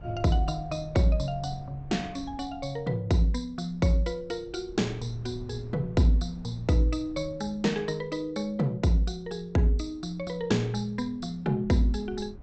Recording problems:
treble missing; nothing above 8 kHz
wind on the microphone; below 130 Hz, SNR 19 dB

